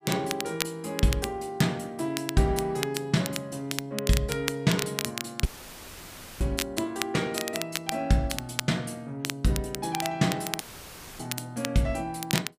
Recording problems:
crackling; vinyl, SNR 6 dB
audio cutting out; at 5.5 s for 1 s and at 11 s for 0.5 s; filled with static

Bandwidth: 15 kHz